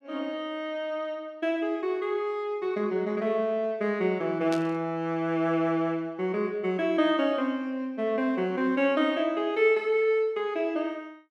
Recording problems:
static burst; at 4.5 s; peak -6 dB vs average level

